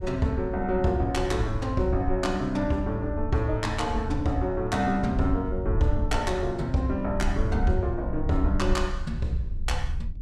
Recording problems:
wind noise; below 76 Hz, SNR 5 dB

